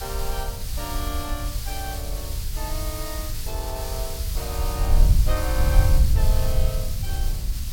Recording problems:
background hiss; slope +2 dB per octave, SNR 0 dB
wind on the microphone; below 68 Hz, SNR -8 dB

